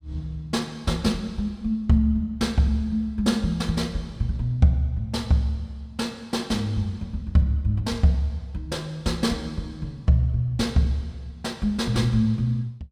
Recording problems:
none

